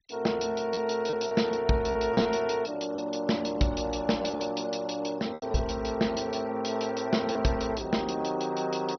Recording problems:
treble missing; nothing above 6 kHz
noise reduction artefacts; signal-to-artefact ratio 22 dB
lost packets; 4% of the sound replaced, filled with repeated pitch periods

